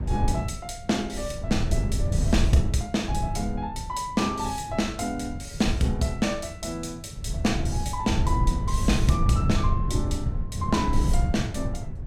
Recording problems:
wind noise; below 120 Hz, SNR 0 dB

